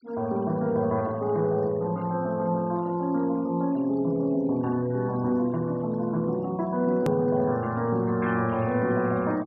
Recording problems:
treble missing; nothing above 6.1 kHz
noise reduction artefacts; signal-to-artefact ratio 27 dB
click at an edit; at 7 s

